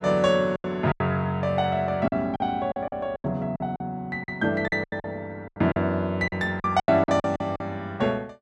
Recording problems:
lost packets; 13% of the sound replaced, filled with silence

